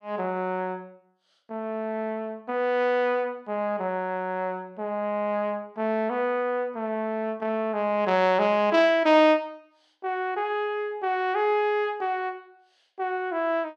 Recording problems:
none

